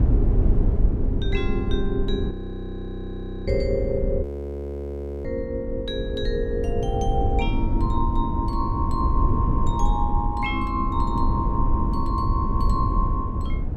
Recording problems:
rumble; below 100 Hz, SNR -2 dB
audio freezing; at 2.5 s for 1 s and at 4 s for 1 s

